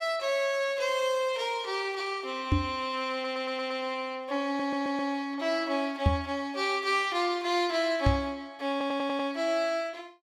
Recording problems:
microphone bump; at 2.5 s, at 6 s and at 8 s; peak +8 dB vs average level
audio stuttering; at 3 s, at 4.5 s and at 8.5 s

